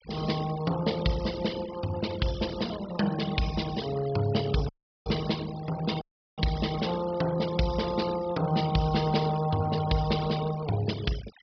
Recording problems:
treble cut off; nothing above 5.5 kHz
noise reduction artefacts; signal-to-artefact ratio 14 dB
audio cutting out; at 4.5 s and at 6 s

